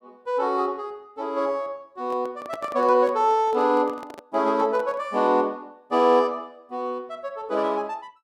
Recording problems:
microphone handling noise; from 2 to 5 s; peak -8 dB vs average level

